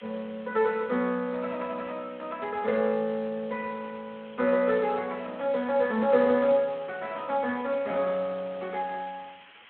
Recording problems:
phone line; 190 Hz to 3.6 kHz, Speex
background hiss; SNR 23 dB

